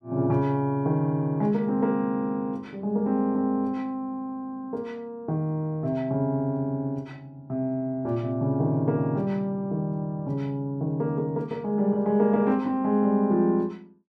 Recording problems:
none

